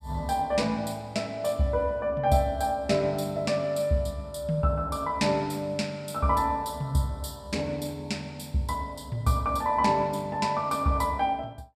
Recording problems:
none

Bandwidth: 14.5 kHz